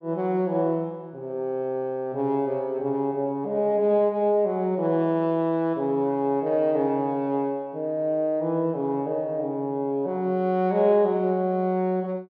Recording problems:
none

